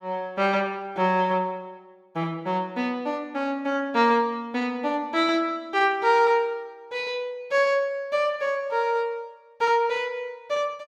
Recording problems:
none

